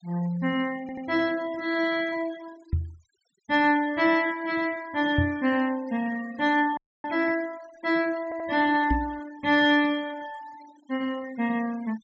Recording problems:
low-pass filter; nothing above 8 kHz
noise reduction artefacts; signal-to-artefact ratio 21 dB
stutter; at 1 s and at 8 s
microphone bump; at 2.5 s, at 5 s and at 9 s; peak +3 dB vs average level
frozen audio; at 7 s

